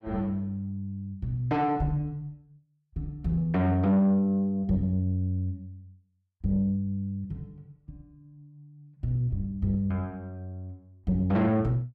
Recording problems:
distorted audio; soft clipping, signal-to-distortion ratio 12 dB

